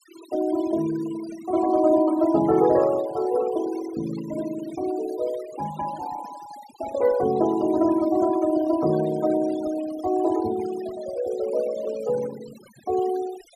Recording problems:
denoising artefacts; signal-to-artefact ratio 17 dB

